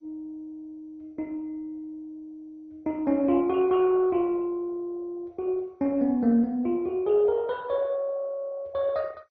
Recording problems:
lossy compression; MP2, then MP2, log-spectral distance 2 dB

